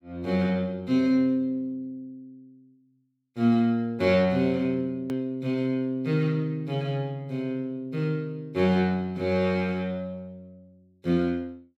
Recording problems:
edit click; at 5 s

